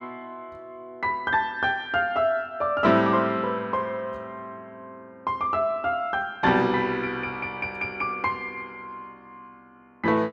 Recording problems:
none

